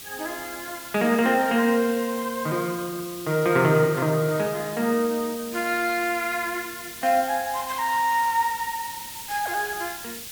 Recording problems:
background hiss; SNR 12 dB

